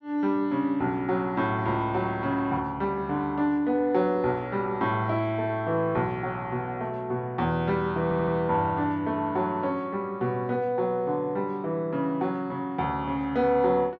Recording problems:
audio stuttering; at 8 s

